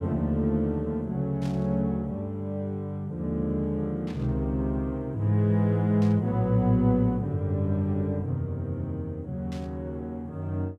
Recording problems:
burst of static; 4 times, first at 1.5 s; peak -14 dB vs average level

